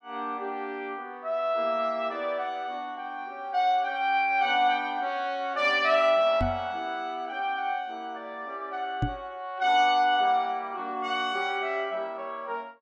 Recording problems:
knock on the microphone; at 6.5 s and at 9 s; peak +3 dB vs average level

